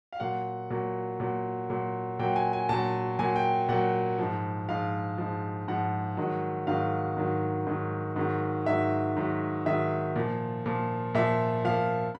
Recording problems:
none

